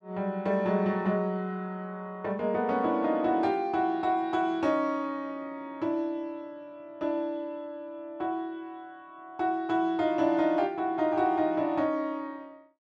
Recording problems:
none

